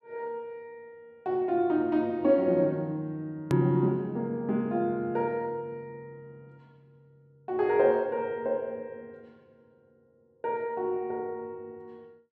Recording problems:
hard cut with a click; at 3.5 s

